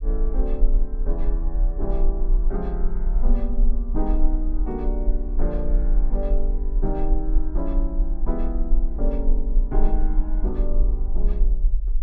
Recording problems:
rumble; below 38 Hz, strongest tone 22 Hz, SNR -6 dB

